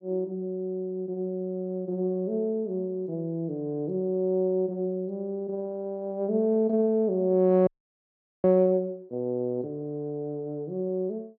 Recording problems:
audio freezing; at 7.5 s for 1 s

